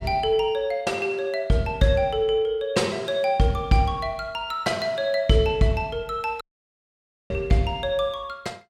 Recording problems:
audio cutting out; at 6.5 s for 1 s

